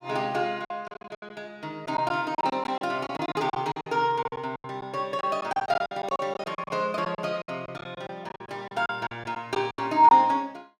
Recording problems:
packet loss; 15% of the sound replaced, filled with silence

